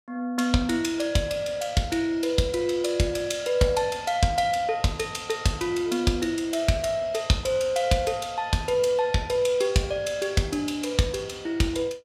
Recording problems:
none

